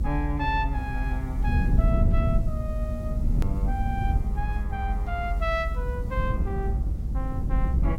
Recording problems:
hiss; SNR 26 dB
rumble; below 94 Hz, SNR -5 dB
click at an edit; at 3.5 s

